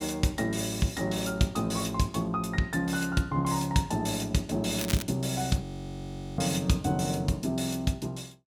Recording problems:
crackle; at 5 s; loose cable, SNR 8 dB
frozen audio; at 5.5 s for 1 s

